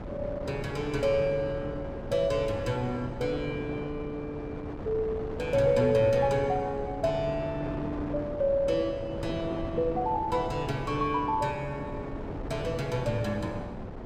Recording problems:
wind noise; below 510 Hz, SNR 9 dB

